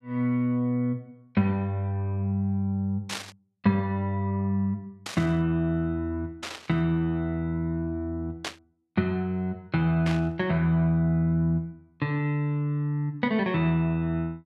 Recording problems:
burst of static; 5 times, first at 3 s; peak -1 dB vs average level

